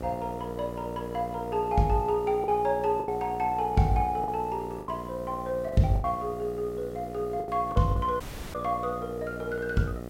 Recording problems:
hum; 60 Hz, harmonics up to 1.9 kHz, SNR 11 dB
background hiss; SNR 23 dB
packet loss; 5% of the sound replaced, filled with the last packet
dropout; at 8 s

